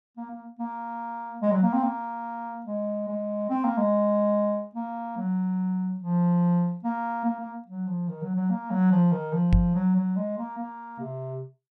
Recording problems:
microphone thump; at 9.5 s; peak +8 dB vs average level

